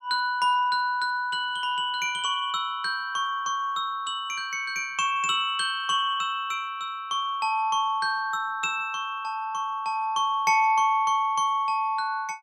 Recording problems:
none

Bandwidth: 13.5 kHz